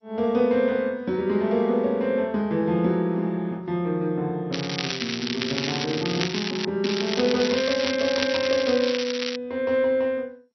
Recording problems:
codec artefacts; MP2, log-spectral distance 8 dB, nothing above 5.5 kHz
crackle; from 4.5 to 6.5 s and from 7 to 9.5 s; loose cable, SNR 5 dB

